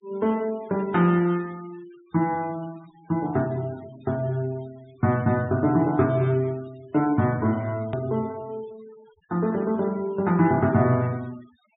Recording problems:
treble cut off; nothing above 4 kHz
noise reduction artefacts; signal-to-artefact ratio 25 dB
edit click; at 8 s

